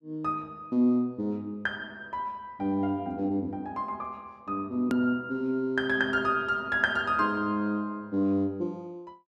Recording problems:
click at an edit; at 5 s

